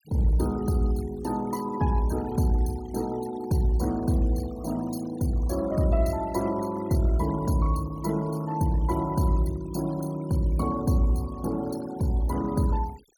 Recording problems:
denoising artefacts; signal-to-artefact ratio 19 dB

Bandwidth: 18.5 kHz